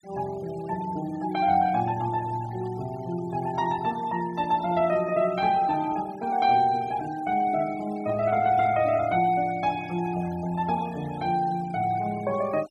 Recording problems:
noise reduction artefacts; signal-to-artefact ratio 20 dB

